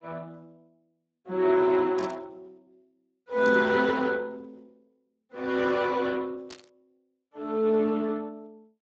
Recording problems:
lossy codec; Speex, log-spectral distance 3 dB
static burst; at 2 s, at 3.5 s and at 6.5 s; peak -13 dB vs average level

